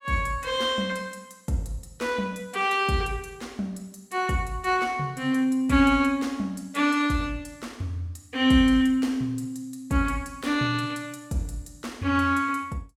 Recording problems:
none

